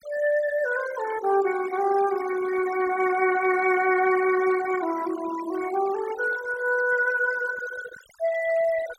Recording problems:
noise reduction artefacts; signal-to-artefact ratio 15 dB

